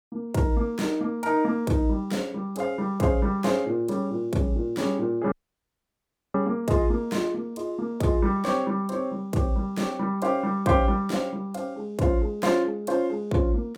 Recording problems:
audio cutting out; at 5.5 s for 1 s

